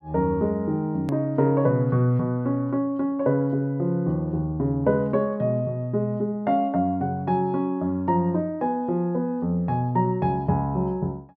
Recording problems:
hard cut with a click; at 1 s

